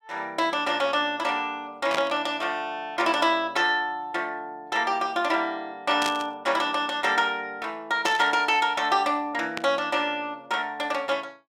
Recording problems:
static burst; 4 times, first at 2 s; peak 0 dB vs average level

